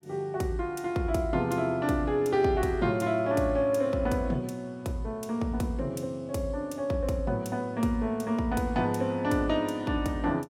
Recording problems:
none

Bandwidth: 16.5 kHz